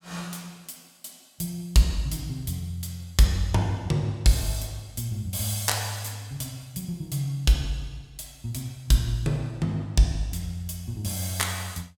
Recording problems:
none

